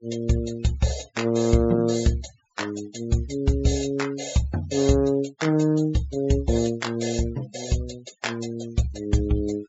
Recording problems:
treble cut off; nothing above 8 kHz
denoising artefacts; signal-to-artefact ratio 20 dB

